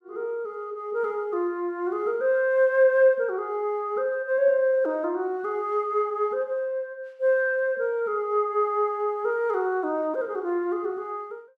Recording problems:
none

